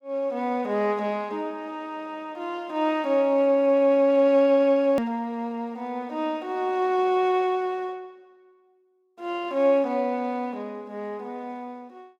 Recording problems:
edit click; at 5 s

